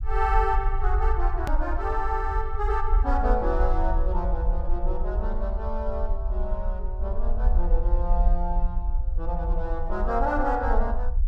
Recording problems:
low-frequency rumble; below 50 Hz, SNR -1 dB
edit click; at 1.5 s

